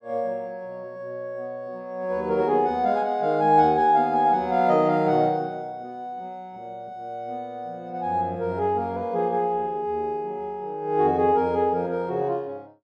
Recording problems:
none

